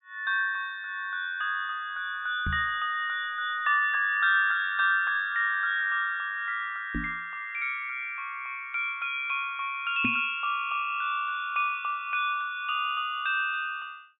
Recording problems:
treble missing; nothing above 4 kHz
microphone thump; at 2.5 s, at 7 s and at 10 s; peak +1 dB vs average level

